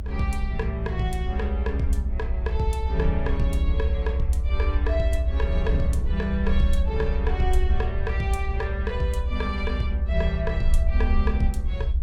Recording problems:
low-frequency rumble; below 70 Hz, SNR -3 dB
wind on the microphone; below 140 Hz, SNR 10 dB

